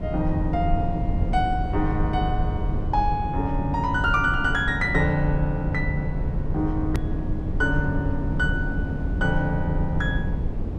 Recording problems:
low-frequency rumble; below 130 Hz, SNR 3 dB
edit click; at 7 s

